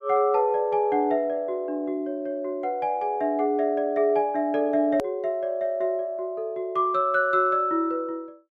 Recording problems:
click at an edit; at 5 s

